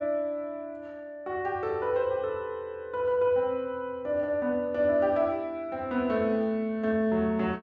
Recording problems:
low-pass filter; nothing above 8 kHz

